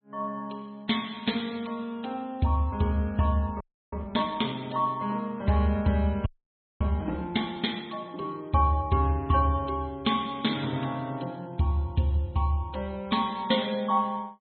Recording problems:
low-pass filter; nothing above 3.9 kHz
codec artefacts; MP3, log-spectral distance 4 dB
audio freezing; at 3.5 s and at 6.5 s for 0.5 s

